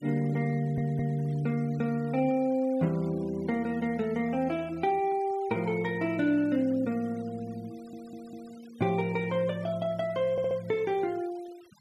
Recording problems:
denoising artefacts; signal-to-artefact ratio 25 dB
stutter; at 0.5 s, at 7.5 s and at 10 s

